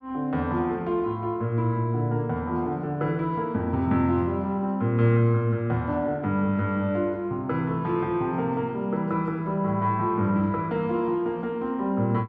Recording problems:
none

